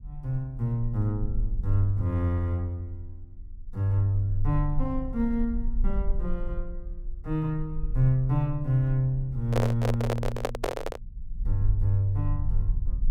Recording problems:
rumble; below 44 Hz, SNR 7 dB
microphone handling noise; from 9.5 to 11 s; peak +4 dB vs average level

